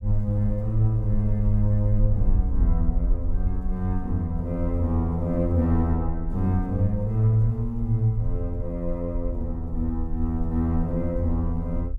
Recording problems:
low-frequency rumble; below 50 Hz, SNR 6 dB

